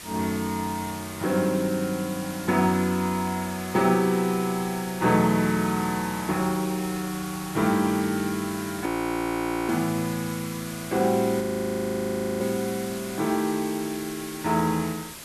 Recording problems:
hiss; slope -1 dB per octave, SNR 12 dB
audio freezing; at 9 s for 1 s and at 11 s for 1 s

